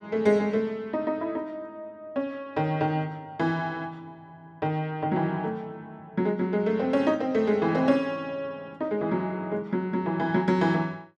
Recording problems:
none

